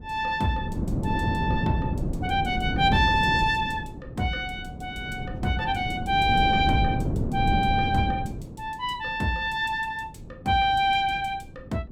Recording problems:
wind on the microphone; below 250 Hz, SNR 4 dB

